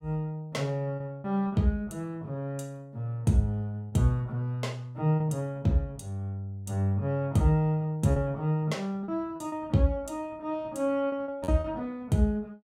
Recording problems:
lost packets; 4% of the sound replaced, filled with repeated pitch periods

